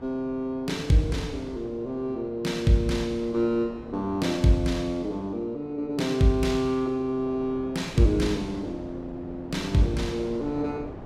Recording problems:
wind on the microphone; below 520 Hz, SNR 17 dB

